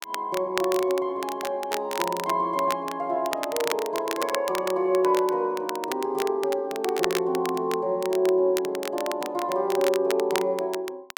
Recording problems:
crackle; vinyl, SNR 10 dB

